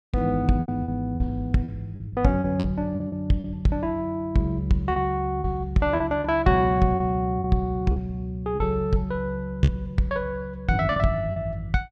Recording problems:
packet loss; 8% of the sound replaced, filled with repeated pitch periods

